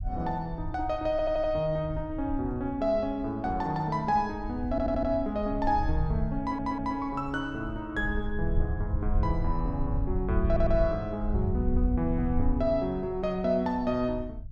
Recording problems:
low-frequency rumble; below 78 Hz, SNR 5 dB
audio stuttering; 4 times, first at 1 s

